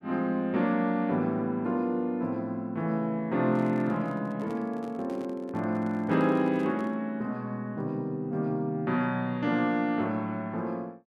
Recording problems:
handling noise; from 3.5 to 7 s; peak -7 dB vs average level

